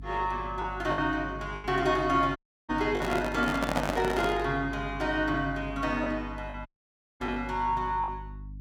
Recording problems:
hum; 50 Hz, harmonics up to 300 Hz, SNR 13 dB
lost packets; 5% of the sound replaced, filled with the last packet
dropout; at 2.5 s and at 6.5 s for 0.5 s
microphone handling noise; from 3 to 4.5 s; peak +4 dB vs average level

